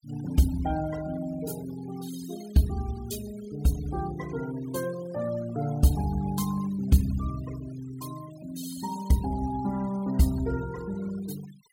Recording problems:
noise reduction artefacts; signal-to-artefact ratio 17 dB

